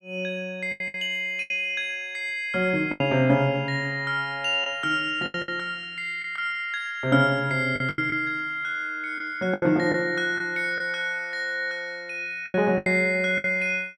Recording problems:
lost packets; 7% of the sound replaced, filled with the last packet

